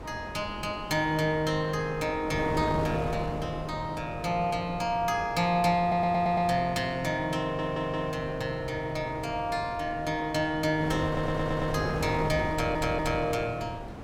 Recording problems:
wind noise; below 670 Hz, SNR 9 dB
audio stuttering; 4 times, first at 6 s

